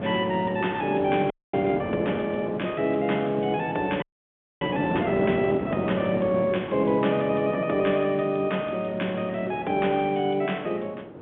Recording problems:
phone line; 190 Hz to 3.4 kHz, G.711
wind noise; below 560 Hz, SNR 9 dB
frozen audio; at 1.5 s and at 4 s for 0.5 s

